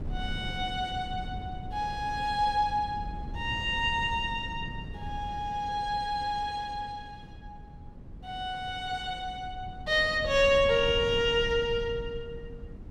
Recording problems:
wind on the microphone; below 160 Hz, SNR 13 dB

